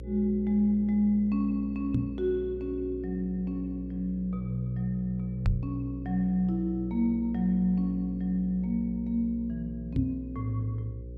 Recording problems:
mains hum; 60 Hz, harmonics up to 540 Hz, SNR 12 dB
microphone bump; at 2 s, at 5.5 s and at 10 s; peak +5 dB vs average level

